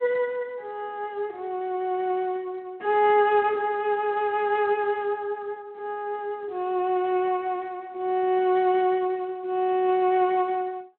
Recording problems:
phone line; 220 Hz to 3.7 kHz, Speex

